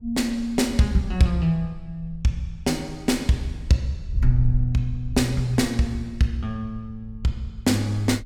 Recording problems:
wind noise; below 60 Hz, SNR 12 dB

